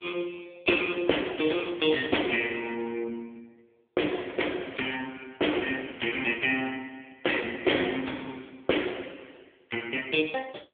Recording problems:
telephone audio; 280 Hz to 3.5 kHz, AMR-NB

